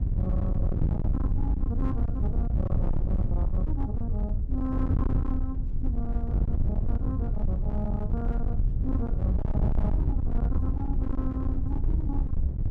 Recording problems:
distorted audio; hard clipping, signal-to-distortion ratio 8 dB
wind noise; below 96 Hz, SNR -7 dB

